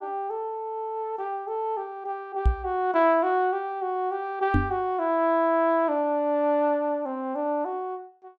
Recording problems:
microphone thump; at 2.5 s and at 4.5 s; peak +7 dB vs average level

